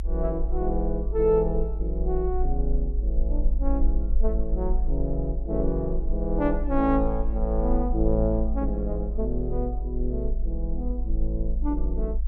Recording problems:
low-frequency rumble; below 52 Hz, SNR 1 dB

